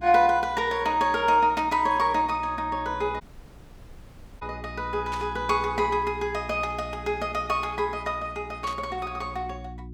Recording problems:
electrical hum; 60 Hz, harmonics up to 360 Hz, SNR 17 dB
static burst; at 1.5 s, at 5 s and at 8.5 s; peak -8 dB vs average level
dropout; at 3 s for 1 s

